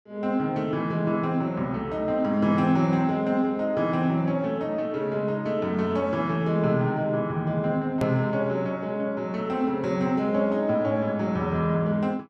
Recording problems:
hard cut with a click; at 8 s

